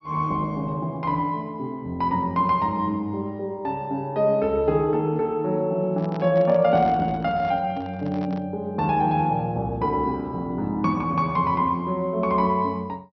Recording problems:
low-pass filter; nothing above 5.9 kHz
microphone handling noise; from 6 to 8.5 s; peak -10 dB vs average level

